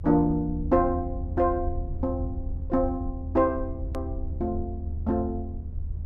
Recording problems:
low-frequency rumble; below 80 Hz, SNR 6 dB
click at an edit; at 4 s

